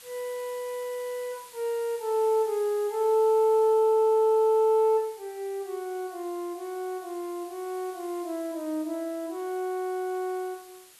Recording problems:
hiss; slope +2 dB per octave, SNR 22 dB

